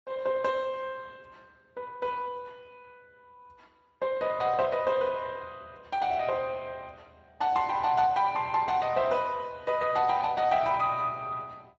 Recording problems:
codec artefacts; Speex, log-spectral distance 3 dB, nothing above 7.3 kHz

